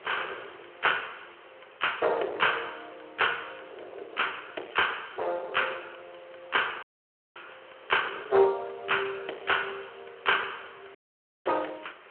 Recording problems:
phone line; 340 Hz to 3.2 kHz, Speex
distorted audio; hard clipping, uneven, signal-to-distortion ratio 11 dB
hiss; SNR 24 dB
wind on the microphone; below 800 Hz, SNR 20 dB
audio cutting out; at 7 s for 0.5 s and at 11 s for 0.5 s

